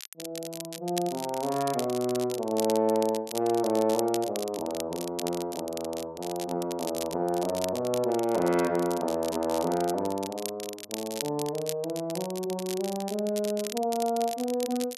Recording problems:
crackle; vinyl, SNR 10 dB

